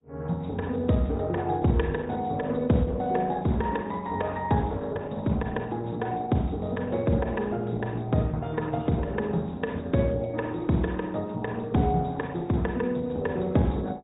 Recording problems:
treble cut off; nothing above 3.8 kHz
lossy compression; Opus, log-spectral distance 4 dB

